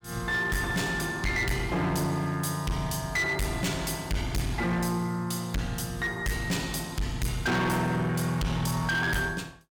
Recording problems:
distorted audio; hard clipping, signal-to-distortion ratio 6 dB

